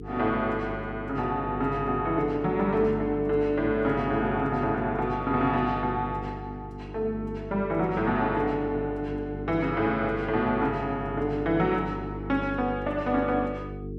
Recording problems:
hum; 50 Hz, harmonics up to 450 Hz, SNR 10 dB

